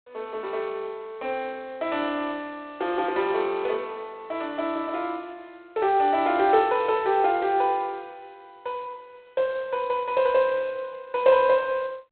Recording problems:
phone line; 300 Hz to 3.6 kHz, G.726

